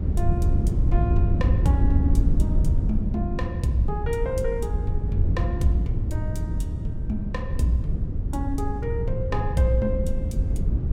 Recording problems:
wind on the microphone; below 98 Hz, SNR -3 dB

